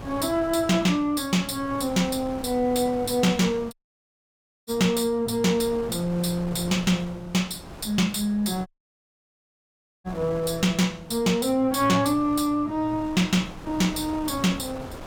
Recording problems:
distortion; soft clipping, signal-to-distortion ratio 10 dB
wind noise; below 890 Hz, SNR 17 dB
dropout; at 3.5 s for 1 s and at 8.5 s for 1.5 s

